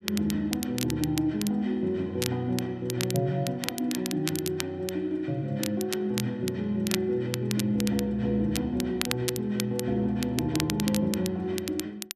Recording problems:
crackling; vinyl, SNR 7 dB

